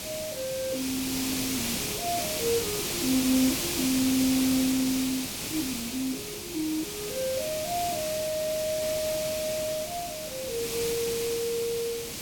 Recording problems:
hiss; SNR 1 dB

